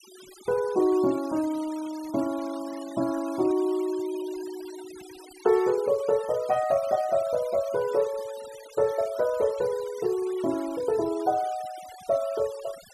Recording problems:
noise reduction artefacts; signal-to-artefact ratio 19 dB

